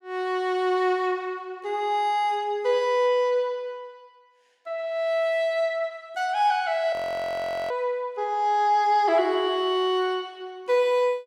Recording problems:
frozen audio; at 7 s for 1 s

